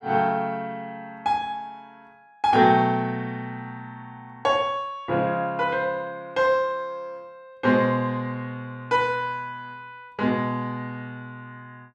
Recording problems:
none

